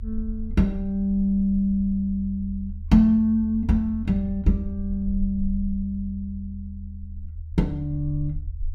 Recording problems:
low-frequency rumble; below 78 Hz, SNR 11 dB

